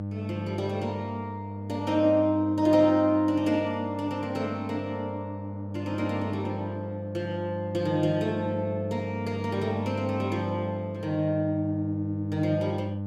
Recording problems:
electrical hum; 50 Hz, harmonics up to 900 Hz, SNR 7 dB

